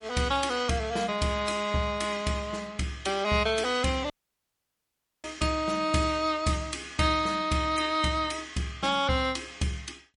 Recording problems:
codec artefacts; MP3, log-spectral distance 4 dB, nothing above 10.4 kHz
dropout; at 4 s for 1 s

